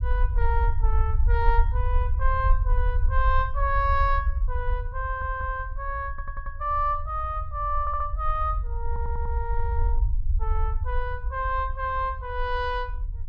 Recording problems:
rumble; below 60 Hz, SNR 0 dB
audio stuttering; 4 times, first at 5 s

